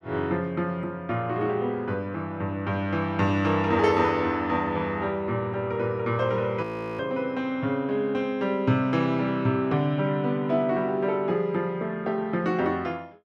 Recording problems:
frozen audio; at 6.5 s

